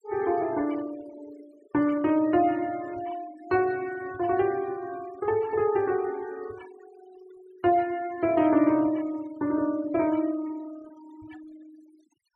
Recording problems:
denoising artefacts; signal-to-artefact ratio 22 dB

